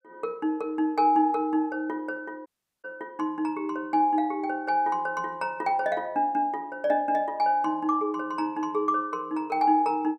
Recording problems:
dropout; at 2.5 s

